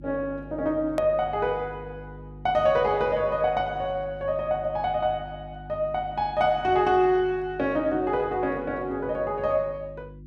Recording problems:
hum; 50 Hz, harmonics up to 350 Hz, SNR 18 dB
click at an edit; at 1 s

